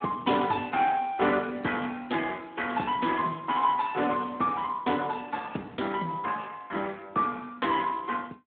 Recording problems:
phone line; 190 Hz to 3.5 kHz, Speex

